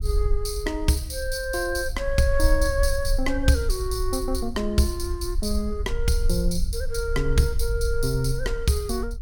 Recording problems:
low-frequency rumble; below 54 Hz, strongest tone 22 Hz, SNR 4 dB

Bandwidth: 18 kHz